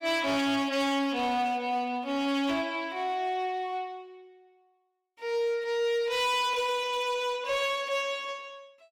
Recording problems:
distorted audio; hard clipping, signal-to-distortion ratio 11 dB

